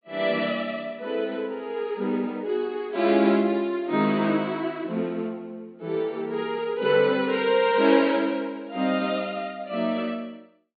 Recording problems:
treble cut off; nothing above 4.6 kHz

